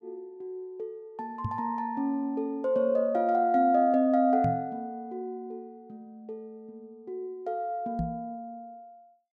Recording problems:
knock on the microphone; at 1.5 s, at 4.5 s and at 8 s; peak +1 dB vs average level

